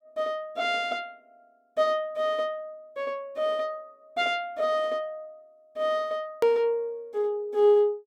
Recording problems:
edit click; at 6.5 s

